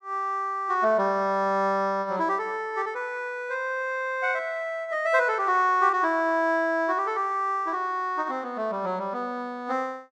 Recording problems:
none

